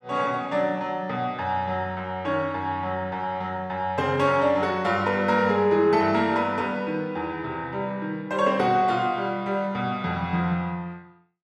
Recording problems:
none

